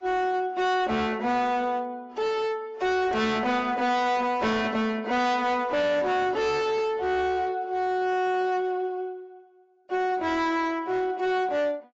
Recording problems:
lossy compression; AAC, log-spectral distance 2 dB, nothing above 7.3 kHz
distortion; hard clipping, signal-to-distortion ratio 7 dB

